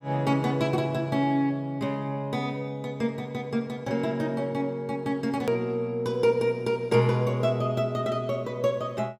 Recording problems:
click at an edit; at 5.5 s

